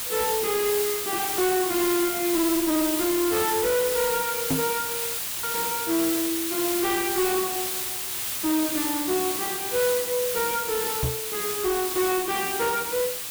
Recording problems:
distortion; hard clipping, uneven, signal-to-distortion ratio 9 dB
background hiss; slope +1 dB per octave, SNR 1 dB
knock on the microphone; at 4.5 s and at 11 s; peak +3 dB vs average level
audio cutting out; at 5 s

